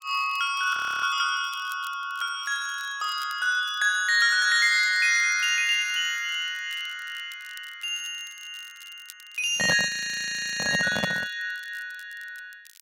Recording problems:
crackling; vinyl, SNR 26 dB
frozen audio; at 0.5 s and at 10 s for 0.5 s
handling noise; from 9.5 to 11 s; peak +1 dB vs average level

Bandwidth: 16 kHz